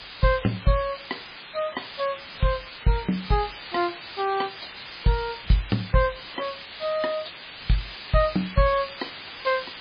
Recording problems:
lossy codec; MP3, log-spectral distance 23 dB, nothing above 4.5 kHz
background hiss; SNR 11 dB

